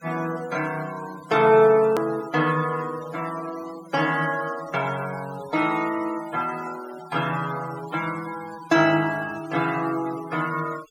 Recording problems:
noise reduction artefacts; signal-to-artefact ratio 18 dB
hard cut with a click; at 2 s

